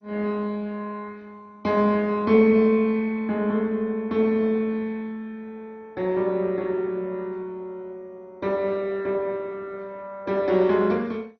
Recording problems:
lossy compression; MP2, log-spectral distance 2 dB, nothing above 6 kHz

